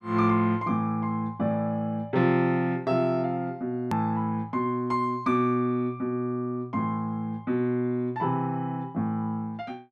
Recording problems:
click at an edit; at 4 s

